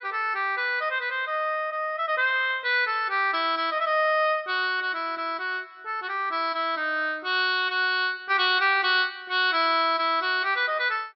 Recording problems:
treble missing; nothing above 5.4 kHz

